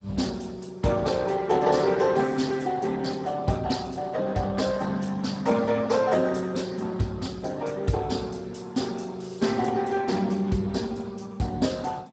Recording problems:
codec artefacts; Speex, log-spectral distance 5 dB, nothing above 7.6 kHz

